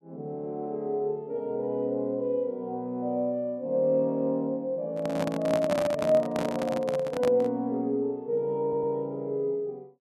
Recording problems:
handling noise; from 5 to 7.5 s; peak +2 dB vs average level
stutter; at 8.5 s

